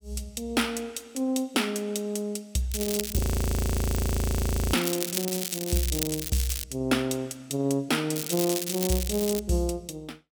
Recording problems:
crackling; at 2.5 s, from 4.5 to 6.5 s and from 8 to 9.5 s; loose cable, SNR 4 dB
audio freezing; at 3 s for 1.5 s

